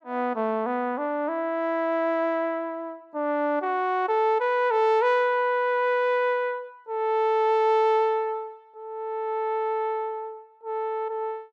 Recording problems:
none

